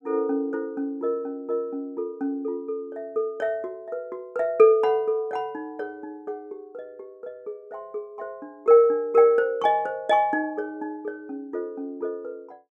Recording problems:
none

